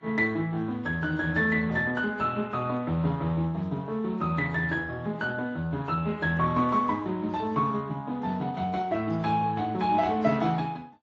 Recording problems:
lossy codec; Speex, then AAC, log-spectral distance 3 dB, nothing above 7.3 kHz

